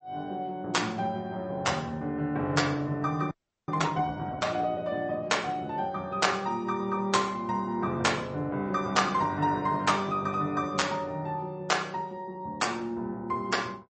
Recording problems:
lossy compression; MP3, log-spectral distance 2 dB, nothing above 8.2 kHz
frozen audio; at 3.5 s

